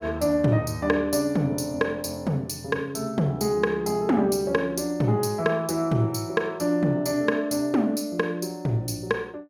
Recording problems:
none

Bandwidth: 17 kHz